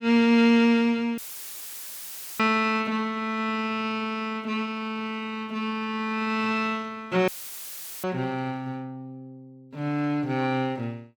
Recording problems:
dropout; at 1 s for 1 s and at 7.5 s for 1 s; filled with static

